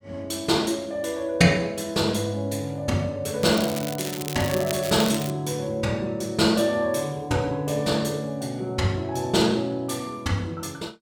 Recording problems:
crackling; from 3.5 to 5.5 s; loose cable, SNR 9 dB

